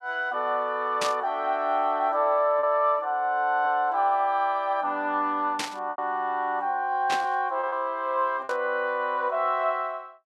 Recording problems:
packet loss; 3% of the sound replaced, filled with repeated pitch periods
burst of static; 4 times, first at 1 s; peak +1 dB vs average level

